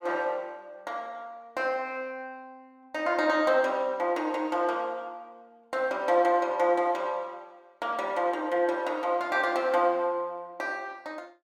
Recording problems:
none

